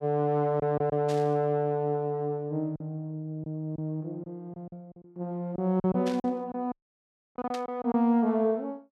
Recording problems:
lost packets; 7% of the sound replaced, filled with silence
burst of static; at 1 s, at 6 s and at 7.5 s; peak -7 dB vs average level
audio cutting out; at 6.5 s for 0.5 s

